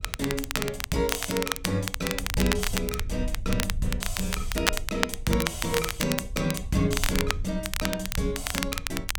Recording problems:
rumble; below 72 Hz, SNR 8 dB
crackling; vinyl, SNR 1 dB

